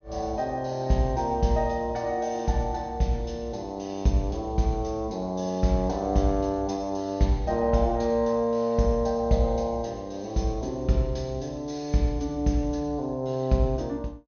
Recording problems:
treble missing; nothing above 6.5 kHz

